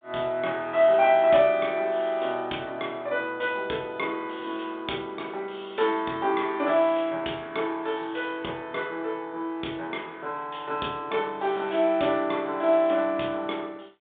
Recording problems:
phone line; 220 Hz to 3.7 kHz, G.726

